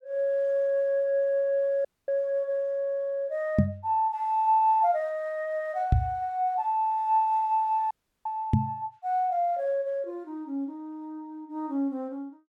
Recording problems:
audio cutting out; at 2 s and at 8 s
microphone thump; at 3.5 s, at 6 s and at 8.5 s; peak +9 dB vs average level

